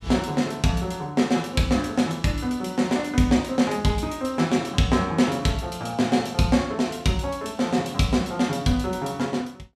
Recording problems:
none

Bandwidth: 14.5 kHz